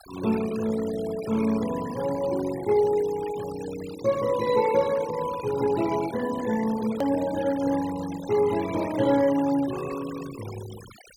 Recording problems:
noise reduction artefacts; signal-to-artefact ratio 15 dB
edit click; at 7 s

